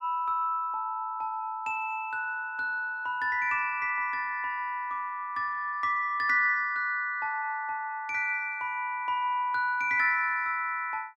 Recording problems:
none

